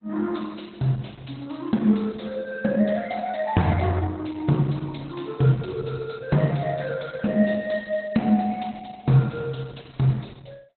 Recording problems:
codec artefacts; Opus, log-spectral distance 7 dB, nothing above 4.1 kHz

